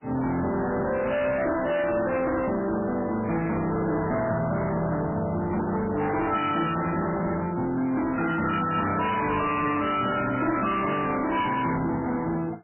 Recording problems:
lossy codec; AAC, then MP3, log-spectral distance 5 dB, nothing above 3 kHz
distortion; hard clipping, signal-to-distortion ratio 7 dB

